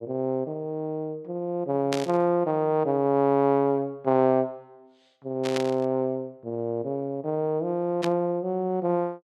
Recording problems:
static burst; at 2 s, at 5.5 s and at 8 s; peak -1 dB vs average level

